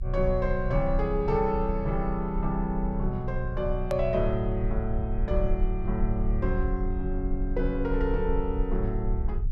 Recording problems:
low-frequency rumble; below 52 Hz, strongest tone 32 Hz, SNR 3 dB
click at an edit; at 4 s

